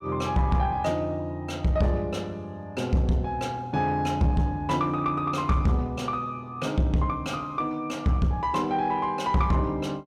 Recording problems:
distorted audio; soft clipping, signal-to-distortion ratio 11 dB

